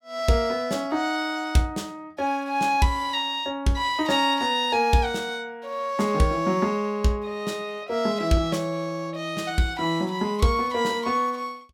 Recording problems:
none

